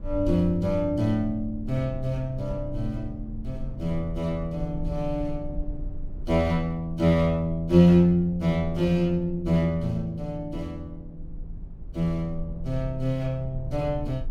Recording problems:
rumble; below 62 Hz, strongest tone 22 Hz, SNR 14 dB

